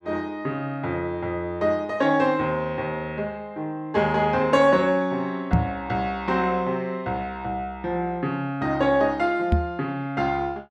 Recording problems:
microphone thump; at 5.5 s and at 9.5 s; peak +8 dB vs average level

